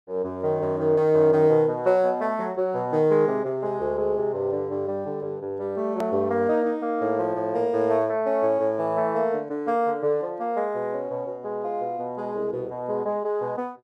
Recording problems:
edit click; at 6 s

